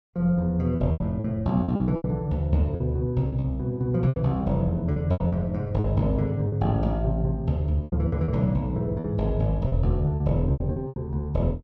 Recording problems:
lost packets; 11% of the sound replaced, filled with repeated pitch periods

